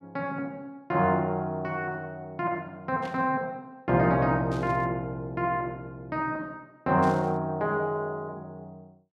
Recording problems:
static burst; at 3 s, at 4.5 s and at 7 s; peak -12 dB vs average level

